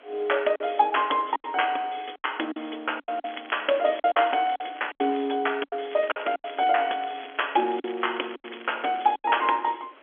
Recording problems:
phone line; 240 Hz to 3.4 kHz, G.711
background hiss; SNR 26 dB
lost packets; 10% of the sound replaced, filled with silence
crackle; from 3 to 5 s and from 6 to 9 s; loose cable, SNR 19 dB

